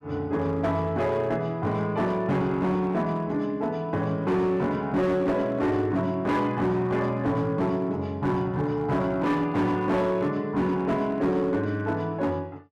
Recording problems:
distortion; hard clipping, signal-to-distortion ratio 11 dB

